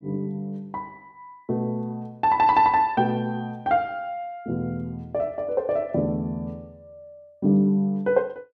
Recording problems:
none

